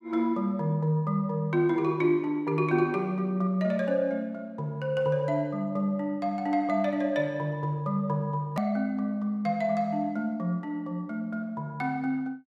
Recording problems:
hard cut with a click; at 8.5 s

